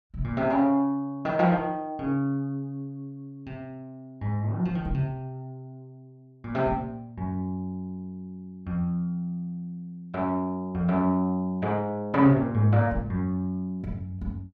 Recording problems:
none

